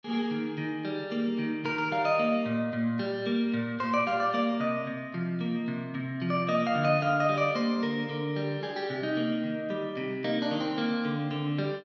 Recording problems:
none

